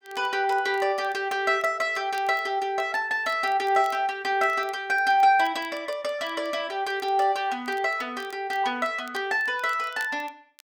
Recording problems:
crackling; vinyl, SNR 27 dB

